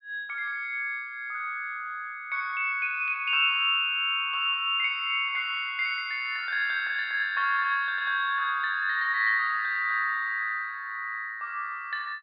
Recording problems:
treble cut off; nothing above 5.1 kHz

